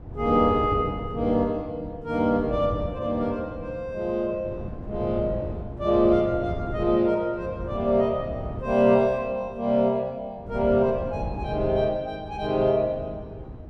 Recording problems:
wind on the microphone; below 260 Hz, SNR 11 dB

